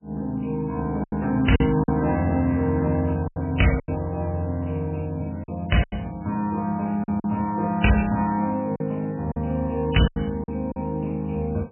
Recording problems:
codec artefacts; MP3, log-spectral distance 6 dB, nothing above 3 kHz
packet loss; 7% of the sound replaced, filled with silence

